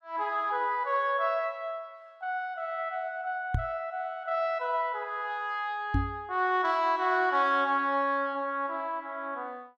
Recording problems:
knock on the microphone; at 3.5 s and at 6 s; peak +4 dB vs average level

